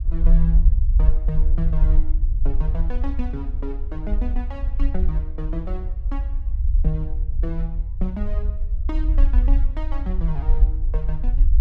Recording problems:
rumble; below 52 Hz, SNR -9 dB

